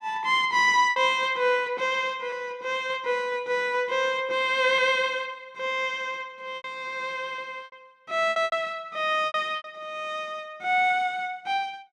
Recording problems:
lost packets; 5% of the sound replaced, filled with repeated pitch periods

